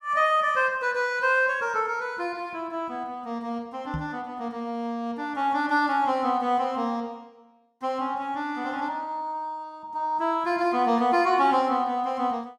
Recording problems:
microphone thump; at 4 s; peak -3 dB vs average level

